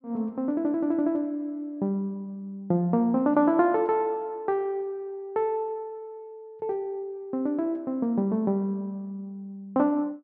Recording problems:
none

